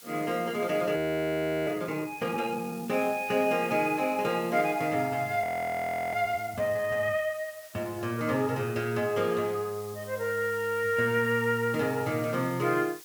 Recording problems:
hiss; slope +2 dB per octave, SNR 19 dB
frozen audio; at 1 s for 0.5 s and at 5.5 s for 0.5 s

